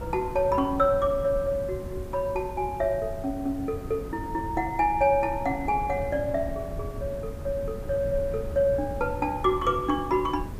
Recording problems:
hiss; slope -1 dB per octave, SNR 28 dB
wind noise; below 170 Hz, SNR 11 dB

